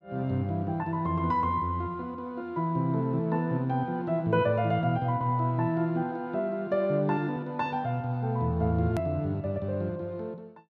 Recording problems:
edit click; at 9 s

